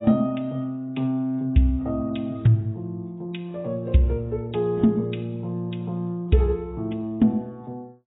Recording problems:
lossy compression; AAC, log-spectral distance 2 dB, nothing above 3.8 kHz

